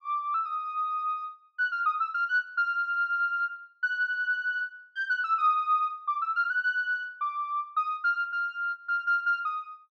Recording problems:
none

